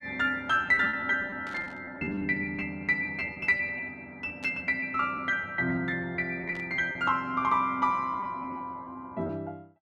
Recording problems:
packet loss; 10% of the sound replaced, filled with repeated pitch periods
burst of static; at 1.5 s, at 4.5 s and at 6.5 s; peak -13 dB vs average level

